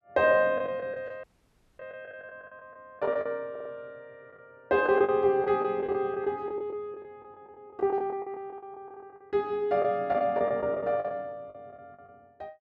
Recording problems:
lost packets; 14% of the sound replaced, filled with the last packet
audio cutting out; at 1 s for 0.5 s
stutter; at 3.5 s

